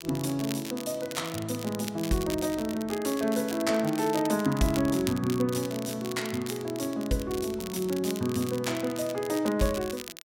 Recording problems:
crackle; vinyl, SNR 12 dB

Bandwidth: 16.5 kHz